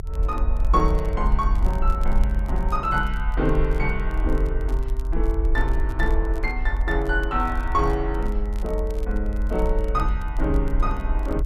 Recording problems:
low-frequency rumble; below 48 Hz, strongest tone 44 Hz, SNR -1 dB
crackle; vinyl, SNR 25 dB

